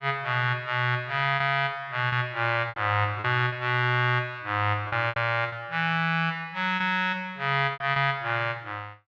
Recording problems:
packet loss; 6% of the sound replaced, filled with repeated pitch periods

